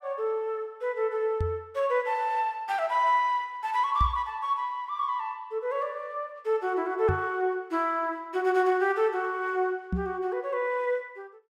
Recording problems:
knock on the microphone; 4 times, first at 1.5 s; peak +3 dB vs average level

